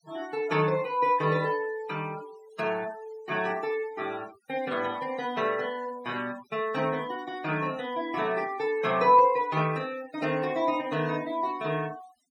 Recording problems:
noise reduction artefacts; signal-to-artefact ratio 20 dB

